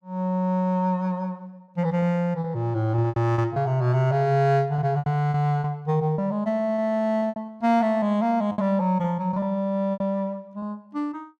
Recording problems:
lost packets; 8% of the sound replaced, filled with repeated pitch periods

